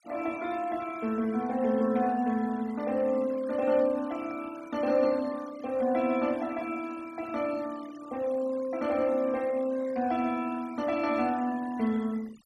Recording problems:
denoising artefacts; signal-to-artefact ratio 20 dB

